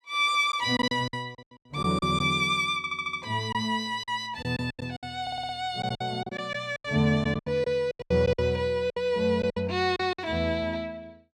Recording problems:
lost packets; 13% of the sound replaced, filled with silence
audio stuttering; at 3 s and at 5 s

